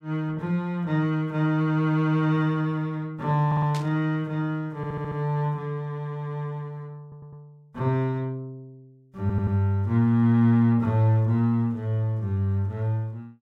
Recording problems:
audio stuttering; 4 times, first at 3.5 s
static burst; at 3.5 s; peak -8 dB vs average level

